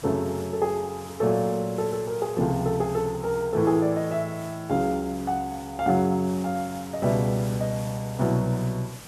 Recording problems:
background hiss; slope -3 dB per octave, SNR 18 dB

